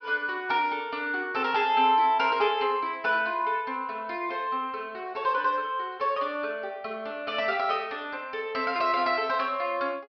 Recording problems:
treble cut off; nothing above 5.5 kHz

